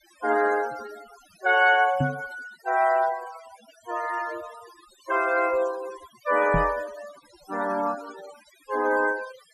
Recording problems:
denoising artefacts; signal-to-artefact ratio 17 dB
microphone thump; at 2 s and at 6.5 s; peak +3 dB vs average level

